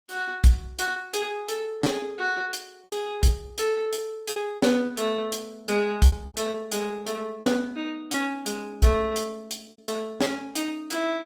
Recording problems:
lossy compression; Opus, log-spectral distance 3 dB, nothing above 19 kHz
lost packets; 9% of the sound replaced, filled with repeated pitch periods

